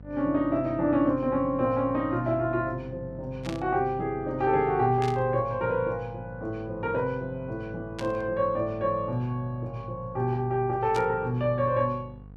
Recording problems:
electrical hum; 50 Hz, harmonics up to 750 Hz, SNR 18 dB
static burst; 4 times, first at 3.5 s; peak -7 dB vs average level

